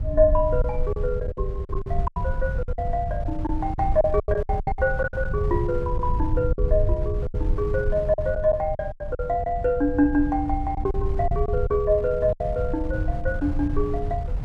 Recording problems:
rumble; below 76 Hz, SNR 5 dB
wind on the microphone; below 100 Hz, SNR 9 dB
lost packets; 10% of the sound replaced, filled with silence

